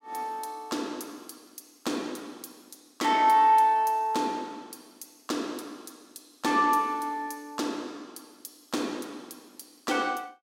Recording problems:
none

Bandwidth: 16 kHz